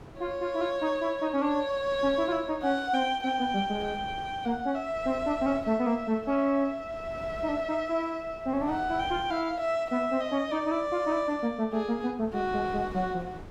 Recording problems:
wind noise; below 560 Hz, SNR 20 dB

